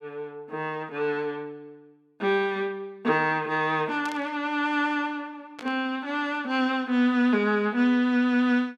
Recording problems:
burst of static; at 4 s and at 5.5 s; peak -10 dB vs average level

